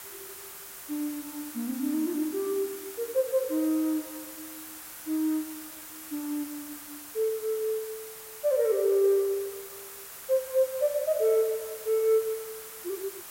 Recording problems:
background hiss; SNR 12 dB

